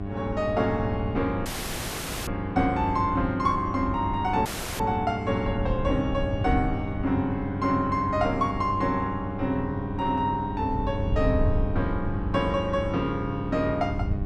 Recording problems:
hum; 50 Hz, harmonics up to 1.2 kHz, SNR 7 dB
wind noise; below 100 Hz, SNR 8 dB
audio cutting out; at 1.5 s for 1 s and at 4.5 s

